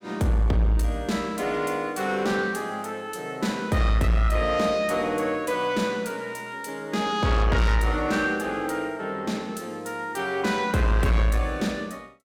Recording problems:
distorted audio; soft clipping, signal-to-distortion ratio 10 dB

